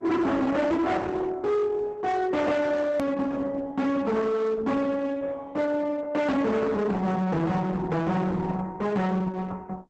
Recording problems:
codec artefacts; Opus, log-spectral distance 3 dB, nothing above 13.1 kHz
distortion; hard clipping, signal-to-distortion ratio 7 dB
edit click; at 3 s

